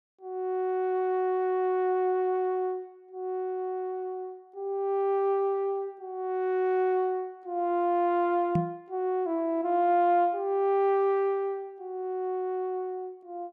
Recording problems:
microphone bump; at 8.5 s; peak +4 dB vs average level

